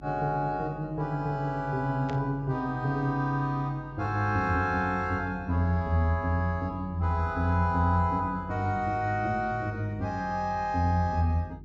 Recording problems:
low-pass filter; nothing above 8 kHz
mains hum; 50 Hz, harmonics up to 400 Hz, SNR 19 dB
burst of static; at 2 s; peak -11 dB vs average level

